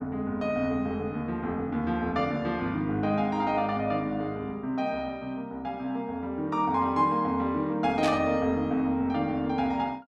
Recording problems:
burst of static; at 8 s; peak -1 dB vs average level

